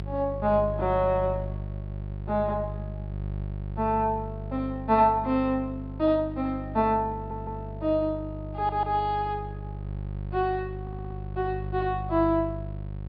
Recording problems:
treble missing; nothing above 5.5 kHz
hum; 50 Hz, harmonics up to 750 Hz, SNR 9 dB
audio stuttering; at 7 s, at 8.5 s and at 11 s

